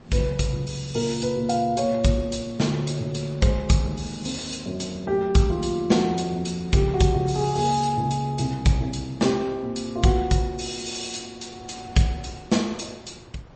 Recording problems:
lossy codec; MP3, log-spectral distance 5 dB, nothing above 8.2 kHz
wind on the microphone; below 800 Hz, SNR 23 dB

